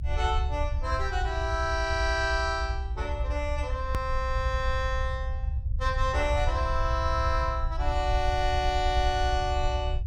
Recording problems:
rumble; below 70 Hz, SNR 2 dB
edit click; at 4 s

